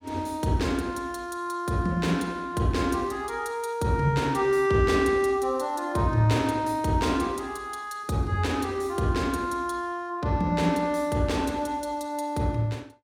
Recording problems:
none

